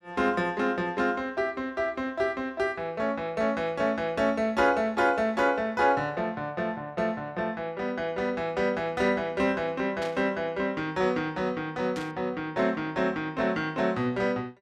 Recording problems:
static burst; at 10 s and at 12 s; peak -7 dB vs average level

